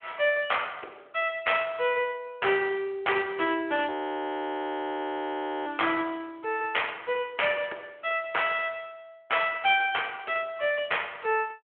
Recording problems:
telephone audio; 300 Hz to 3.4 kHz, Speex
frozen audio; at 4 s for 2 s

